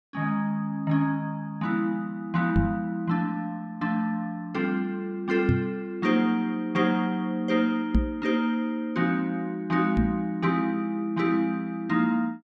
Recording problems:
knock on the microphone; 4 times, first at 2.5 s; peak +7 dB vs average level

